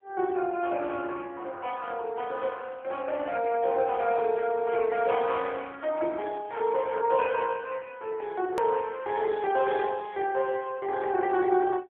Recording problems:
phone line; 300 Hz to 3.7 kHz, AMR-NB
edit click; at 8.5 s

